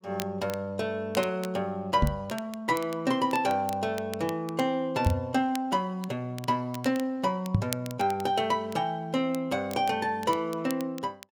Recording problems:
crackle; vinyl, SNR 16 dB
microphone bump; at 2 s, at 5 s and at 7.5 s; peak +9 dB vs average level

